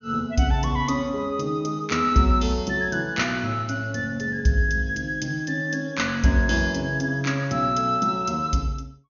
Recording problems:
treble cut off; nothing above 6.7 kHz

